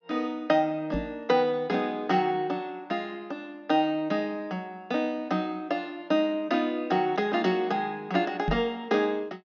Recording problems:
treble missing; nothing above 6.8 kHz
microphone bump; at 1 s and at 8.5 s; peak +2 dB vs average level

